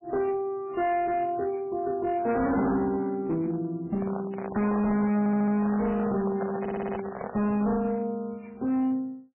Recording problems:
codec artefacts; MP3, log-spectral distance 2 dB, nothing above 2.8 kHz
distorted audio; hard clipping, signal-to-distortion ratio 7 dB
microphone handling noise; from 4 to 7.5 s; peak -2 dB vs average level
audio stuttering; at 5 s and at 6.5 s

